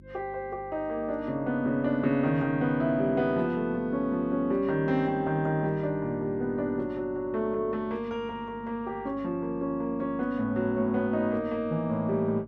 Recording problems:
electrical hum; 50 Hz, harmonics up to 350 Hz, SNR 22 dB

